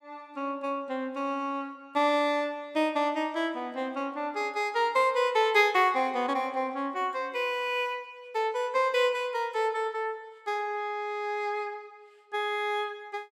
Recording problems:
none

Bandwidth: 15.5 kHz